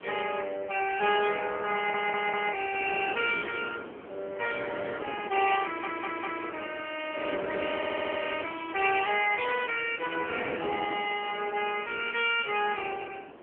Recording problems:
phone line; 220 Hz to 3.3 kHz, AMR-NB
wind noise; below 930 Hz, SNR 13 dB
audio stuttering; at 2 s, at 5.5 s and at 8 s

